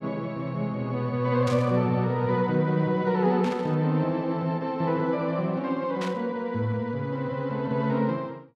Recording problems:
burst of static; at 1.5 s, at 3.5 s and at 6 s; peak -7 dB vs average level

